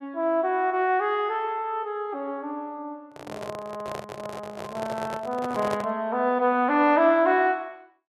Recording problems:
handling noise; from 3 to 6 s; peak -3 dB vs average level

